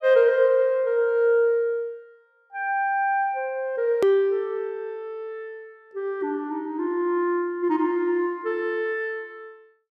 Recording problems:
click at an edit; at 4 s

